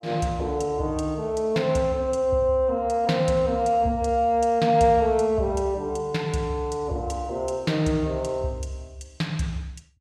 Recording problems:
none

